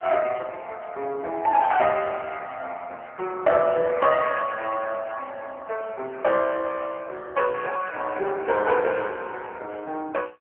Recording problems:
phone line; 300 Hz to 3.3 kHz, AMR-NB

